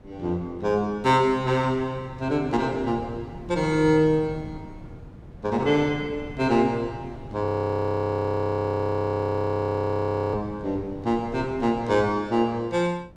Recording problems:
wind noise; below 290 Hz, SNR 17 dB
frozen audio; at 7.5 s for 3 s

